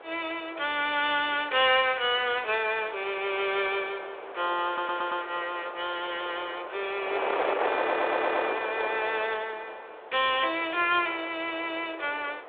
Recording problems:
phone line; 370 Hz to 3.6 kHz, G.726
wind on the microphone; below 1.2 kHz, SNR 7 dB
audio stuttering; at 4.5 s and at 8 s

